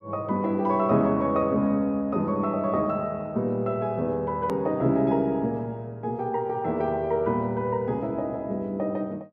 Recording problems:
hard cut with a click; at 4.5 s

